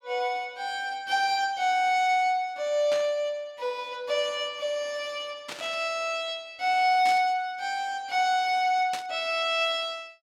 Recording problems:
burst of static; 4 times, first at 3 s; peak -4 dB vs average level

